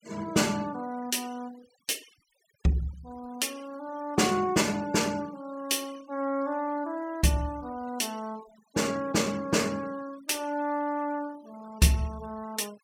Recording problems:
denoising artefacts; signal-to-artefact ratio 22 dB

